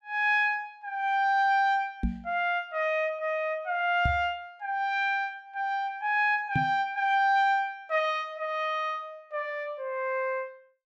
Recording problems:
knock on the microphone; at 2 s, at 4 s and at 6.5 s; peak +3 dB vs average level

